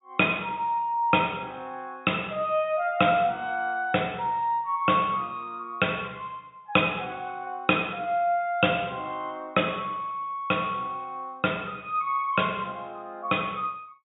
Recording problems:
treble missing; nothing above 4 kHz

